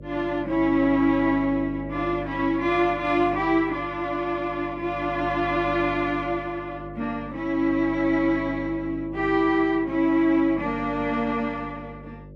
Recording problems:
electrical hum; 50 Hz, harmonics up to 600 Hz, SNR 15 dB

